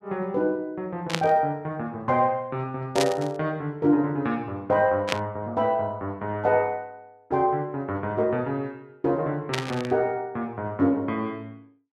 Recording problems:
burst of static; 4 times, first at 1 s; peak +4 dB vs average level

